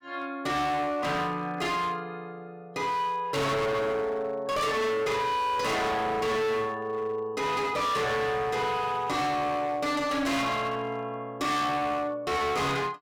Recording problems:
distorted audio; hard clipping, uneven, signal-to-distortion ratio 6 dB

